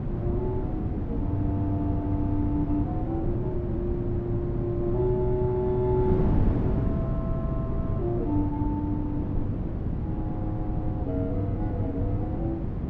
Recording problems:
wind on the microphone; below 240 Hz, SNR -1 dB

